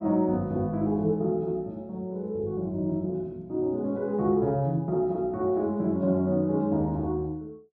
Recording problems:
none

